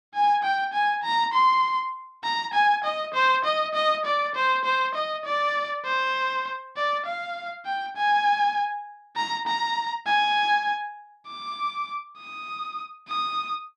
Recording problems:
none

